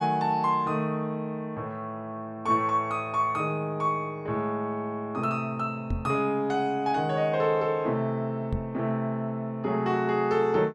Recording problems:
microphone bump; at 6 s and at 8.5 s; peak +1 dB vs average level

